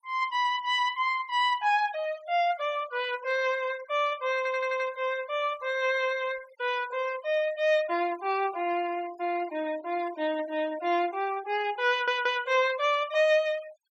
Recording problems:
denoising artefacts; signal-to-artefact ratio 20 dB
stutter; at 4.5 s and at 12 s

